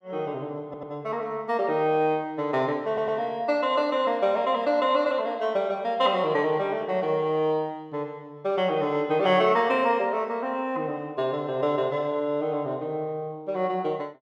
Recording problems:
stutter; at 0.5 s and at 3 s

